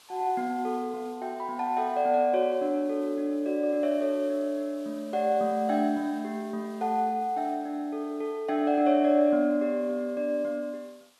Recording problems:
hiss; slope 0 dB per octave, SNR 28 dB

